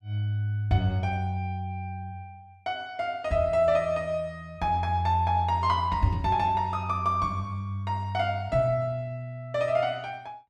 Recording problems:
none

